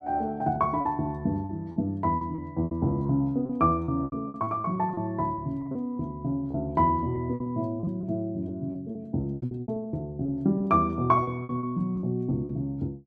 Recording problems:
lost packets; 12% of the sound replaced, filled with repeated pitch periods

